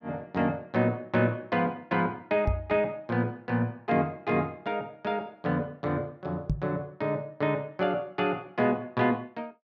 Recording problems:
microphone bump; at 2.5 s and at 6.5 s; peak +4 dB vs average level

